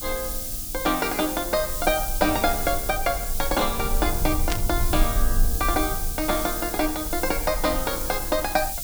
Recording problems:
background hiss; SNR 4 dB
low-frequency rumble; below 50 Hz, strongest tone 20 Hz, SNR 6 dB
burst of static; at 4.5 s; peak +1 dB vs average level

